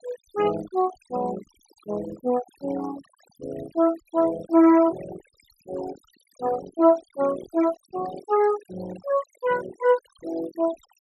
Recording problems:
noise reduction artefacts; signal-to-artefact ratio 18 dB

